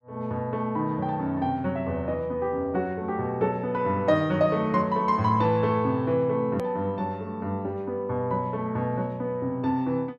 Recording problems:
edit click; at 6.5 s

